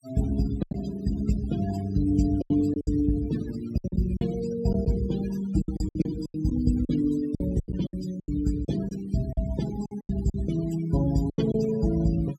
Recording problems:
denoising artefacts; signal-to-artefact ratio 14 dB
lost packets; 11% of the sound replaced, filled with silence

